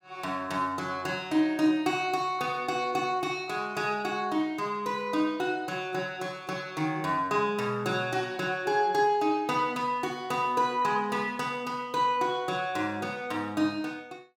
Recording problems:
none

